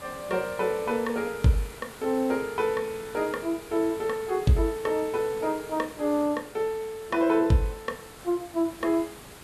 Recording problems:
hiss; slope -3 dB per octave, SNR 17 dB

